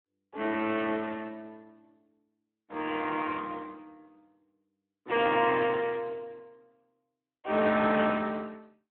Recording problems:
phone line; 240 Hz to 3.4 kHz, Speex

